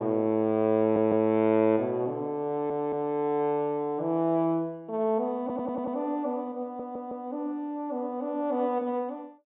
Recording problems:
low-pass filter; nothing above 4 kHz
stutter; 4 times, first at 1 s

